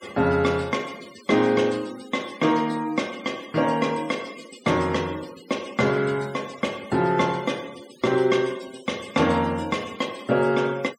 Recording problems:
noise reduction artefacts; signal-to-artefact ratio 21 dB

